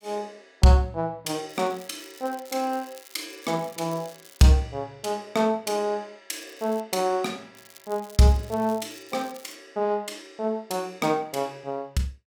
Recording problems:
crackle; from 1.5 to 4.5 s, at 6.5 s and from 7.5 to 9.5 s; loose cable, SNR 22 dB

